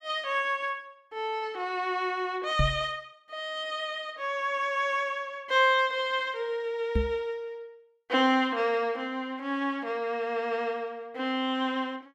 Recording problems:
microphone thump; at 2.5 s and at 7 s; peak +5 dB vs average level

